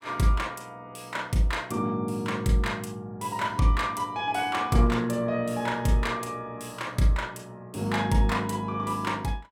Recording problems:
none

